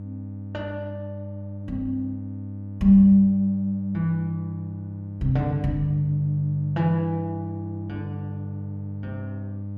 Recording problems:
hum; 50 Hz, harmonics up to 600 Hz, SNR 12 dB

